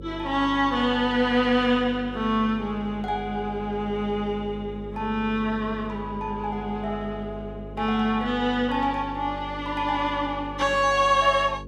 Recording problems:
hum; 50 Hz, harmonics up to 550 Hz, SNR 14 dB

